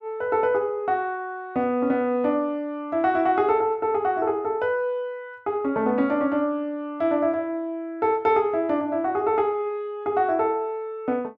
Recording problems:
none

